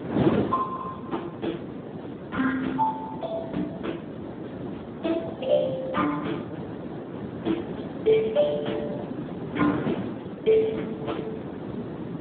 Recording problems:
telephone audio; 130 Hz to 3.4 kHz, Speex
wind on the microphone; below 490 Hz, SNR 5 dB

